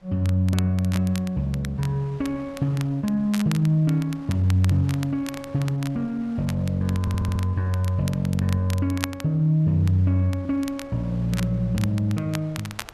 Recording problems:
wind noise; below 1.4 kHz, SNR 26 dB
crackling; vinyl, SNR 16 dB
audio stuttering; at 7 s

